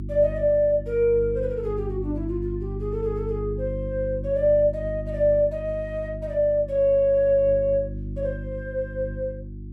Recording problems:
electrical hum; 50 Hz, harmonics up to 350 Hz, SNR 10 dB

